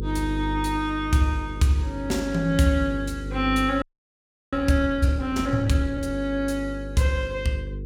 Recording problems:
electrical hum; 50 Hz, harmonics up to 500 Hz, SNR 10 dB
frozen audio; at 4 s for 0.5 s

